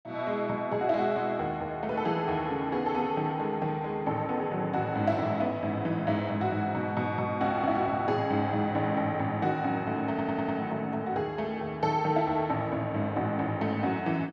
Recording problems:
audio stuttering; at 10 s

